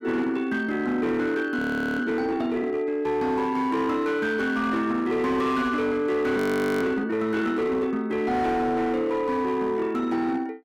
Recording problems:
distortion; hard clipping, signal-to-distortion ratio 12 dB
frozen audio; at 1.5 s and at 6.5 s

